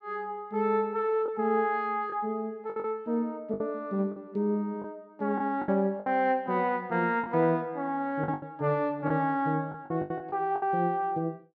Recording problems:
packet loss; 7% of the sound replaced, filled with the last packet

